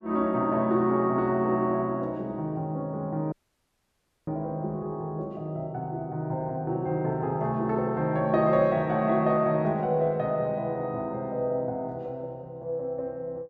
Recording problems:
dropout; at 3.5 s for 1 s

